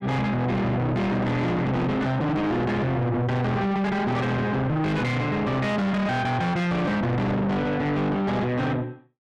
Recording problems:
distortion; soft clipping, signal-to-distortion ratio 6 dB

